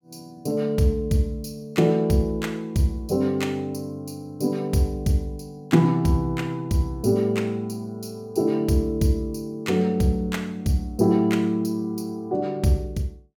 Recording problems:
none

